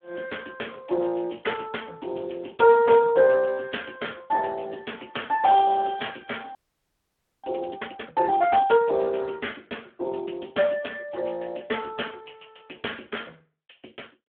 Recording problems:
phone line; 300 Hz to 3.4 kHz, Speex
audio freezing; at 6.5 s for 1 s

